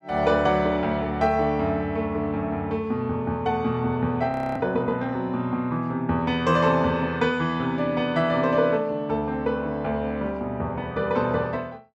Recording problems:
frozen audio; at 4.5 s

